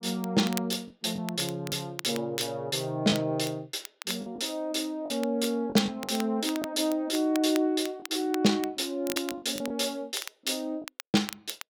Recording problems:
crackling; vinyl, SNR 13 dB
packet loss; 5% of the sound replaced, filled with the last packet

